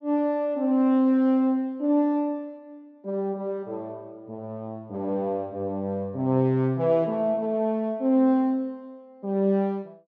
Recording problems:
low-pass filter; nothing above 8 kHz

